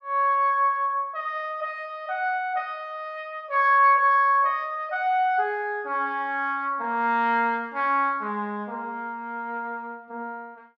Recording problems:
none

